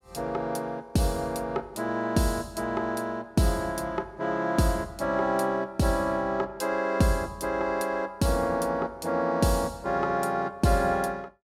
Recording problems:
none

